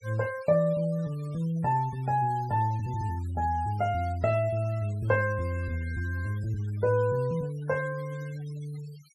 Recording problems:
noise reduction artefacts; signal-to-artefact ratio 22 dB

